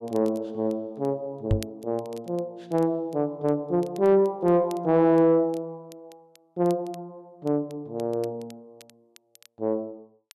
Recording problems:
distortion; soft clipping, signal-to-distortion ratio 11 dB
crackling; vinyl, SNR 28 dB
microphone thump; at 1.5 s; peak +5 dB vs average level

